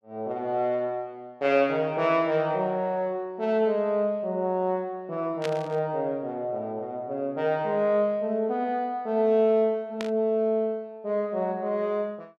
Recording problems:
static burst; at 5.5 s and at 10 s; peak -4 dB vs average level

